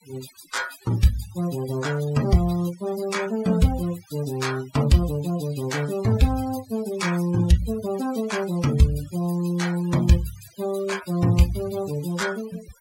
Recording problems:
denoising artefacts; signal-to-artefact ratio 15 dB

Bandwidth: 16 kHz